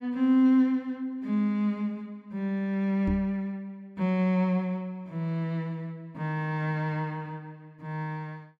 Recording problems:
microphone bump; at 3 s; peak +1 dB vs average level

